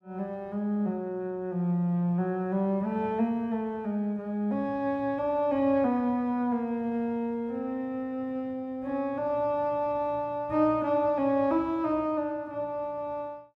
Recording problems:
none

